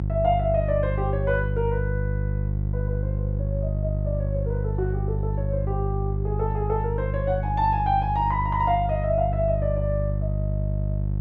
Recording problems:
hum; 50 Hz, harmonics up to 350 Hz, SNR 0 dB

